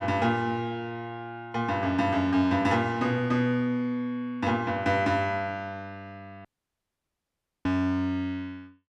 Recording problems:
audio cutting out; at 6.5 s for 1 s

